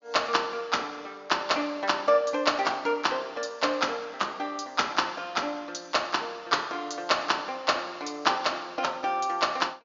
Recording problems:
treble cut off; nothing above 7.1 kHz

